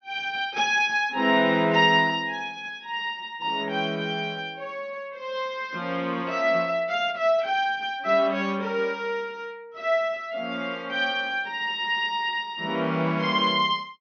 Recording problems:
treble missing; nothing above 6.3 kHz

